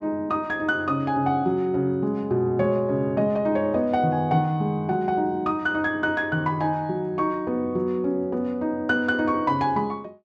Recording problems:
none

